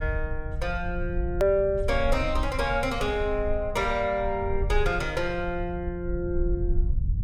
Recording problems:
low-frequency rumble; below 64 Hz, SNR 5 dB
click at an edit; at 1.5 s

